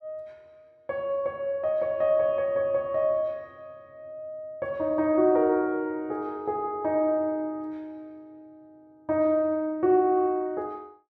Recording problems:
none

